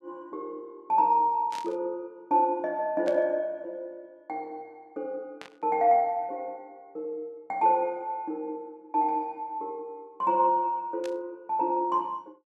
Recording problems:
static burst; 4 times, first at 1.5 s; peak -10 dB vs average level

